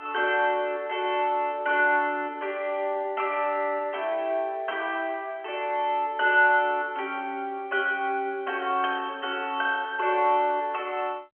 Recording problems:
telephone audio; 240 Hz to 3.2 kHz, G.711

